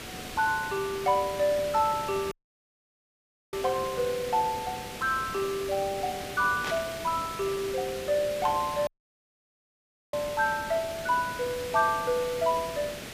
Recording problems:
background hiss; SNR 10 dB
dropout; at 2.5 s for 1 s and at 9 s for 1.5 s
static burst; at 6.5 s; peak -2 dB vs average level

